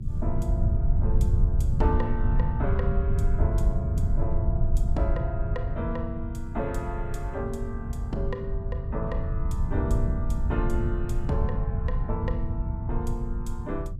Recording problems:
hum; 50 Hz, harmonics up to 400 Hz, SNR 20 dB
low-frequency rumble; below 94 Hz, SNR -5 dB

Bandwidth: 15.5 kHz